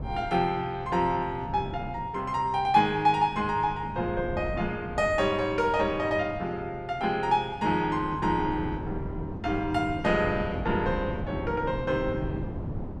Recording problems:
wind noise; below 270 Hz, SNR 11 dB

